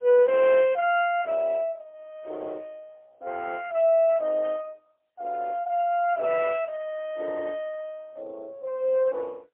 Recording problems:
phone line; 280 Hz to 3.3 kHz, AMR-NB, then MP3

